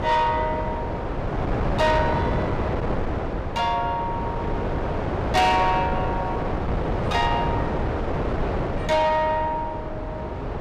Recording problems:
distorted audio; soft clipping, signal-to-distortion ratio 12 dB
wind noise; below 690 Hz, SNR 3 dB

